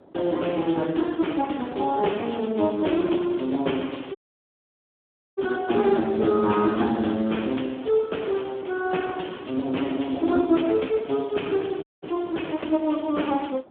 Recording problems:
telephone audio; 190 Hz to 3.4 kHz, Speex
wind noise; below 630 Hz, SNR 23 dB
audio cutting out; at 4 s for 1 s and at 12 s

